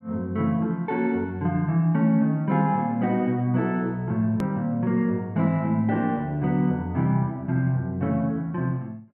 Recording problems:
edit click; at 4.5 s

